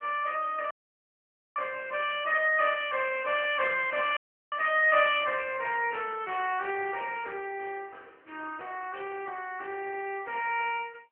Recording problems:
phone line; 260 Hz to 3.1 kHz, AMR-NB
audio cutting out; at 0.5 s for 1 s and at 4 s

